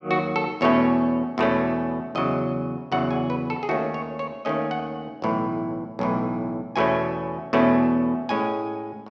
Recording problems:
none

